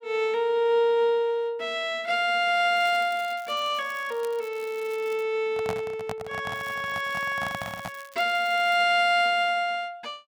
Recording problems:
crackle; from 3 to 5 s and from 6.5 to 9 s; loose cable, SNR 24 dB
handling noise; from 5.5 to 8 s; peak -3 dB vs average level

